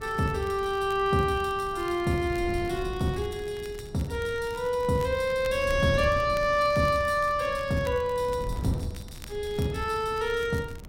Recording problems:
wind on the microphone; below 160 Hz, SNR 13 dB
crackling; vinyl, SNR 24 dB

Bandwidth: 16 kHz